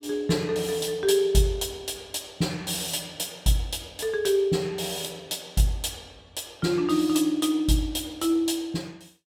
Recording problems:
none

